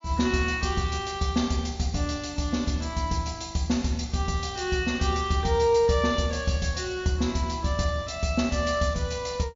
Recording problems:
treble missing; nothing above 7.2 kHz

